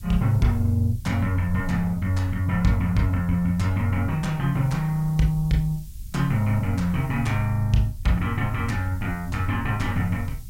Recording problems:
hiss; slope +5 dB per octave, SNR 27 dB
rumble; below 82 Hz, SNR 14 dB

